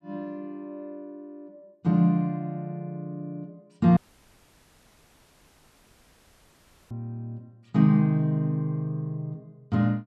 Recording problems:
dropout; at 4 s for 3 s

